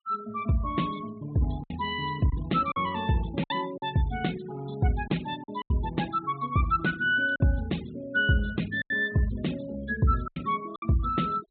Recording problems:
treble missing; nothing above 4 kHz
noise reduction artefacts; signal-to-artefact ratio 19 dB
lost packets; 5% of the sound replaced, filled with silence

